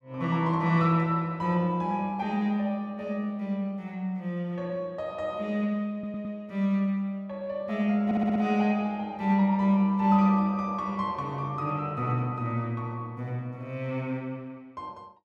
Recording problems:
audio stuttering; at 6 s and at 8 s

